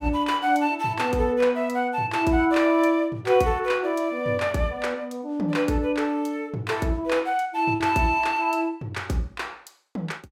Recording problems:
packet loss; 0.4% of the sound replaced, filled with repeated pitch periods

